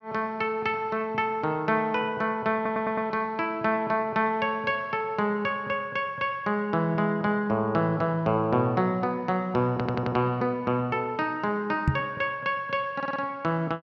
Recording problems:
stutter; at 2.5 s, at 9.5 s and at 13 s
knock on the microphone; at 12 s; peak +7 dB vs average level

